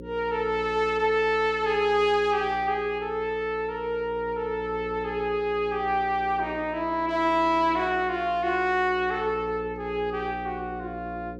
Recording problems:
hum; 60 Hz, harmonics up to 540 Hz, SNR 15 dB

